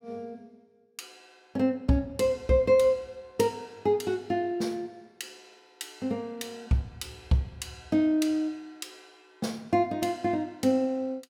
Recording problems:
none

